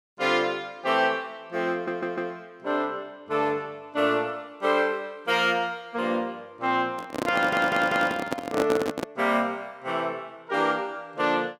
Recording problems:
stutter; at 1.5 s and at 7.5 s
handling noise; from 7 to 9 s; peak +4 dB vs average level

